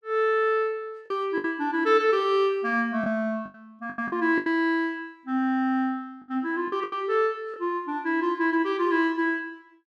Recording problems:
packet loss; 6% of the sound replaced, filled with the last packet

